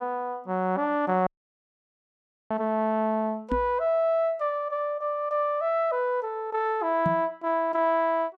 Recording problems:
audio cutting out; at 1.5 s for 1 s
microphone thump; at 3.5 s and at 7 s; peak +2 dB vs average level

